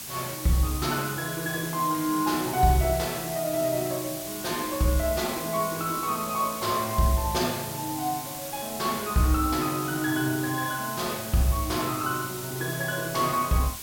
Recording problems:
background hiss; SNR 8 dB

